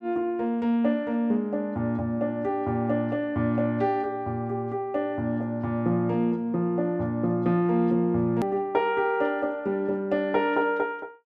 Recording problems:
edit click; at 8.5 s

